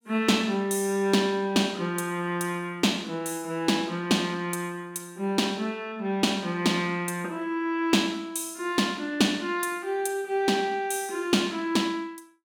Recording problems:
none

